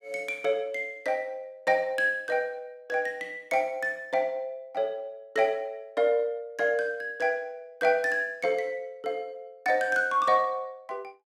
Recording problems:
none

